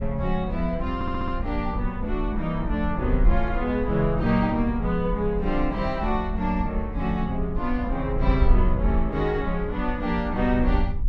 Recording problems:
wind on the microphone; below 58 Hz, SNR 4 dB
audio stuttering; at 1 s

